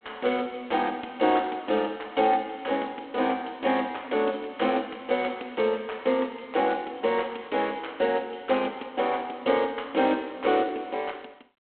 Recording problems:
telephone audio; 240 Hz to 3.8 kHz, G.726

